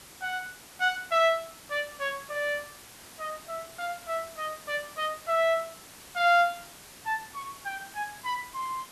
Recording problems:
hiss; slope -2 dB per octave, SNR 17 dB

